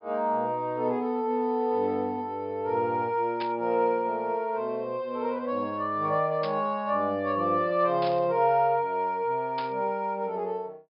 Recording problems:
treble missing; nothing above 5.5 kHz
burst of static; 4 times, first at 3.5 s; peak -7 dB vs average level

